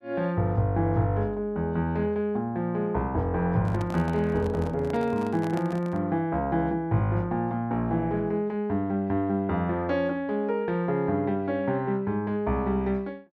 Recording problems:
microphone handling noise; from 3.5 to 6 s; peak -5 dB vs average level

